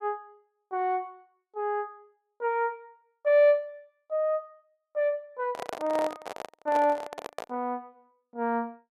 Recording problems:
handling noise; from 5.5 to 7.5 s; peak -2 dB vs average level

